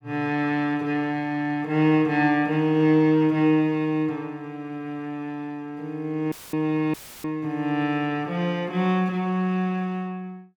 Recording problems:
audio cutting out; at 6.5 s and at 7 s; filled with static

